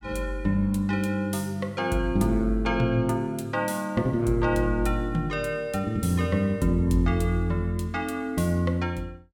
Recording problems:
none

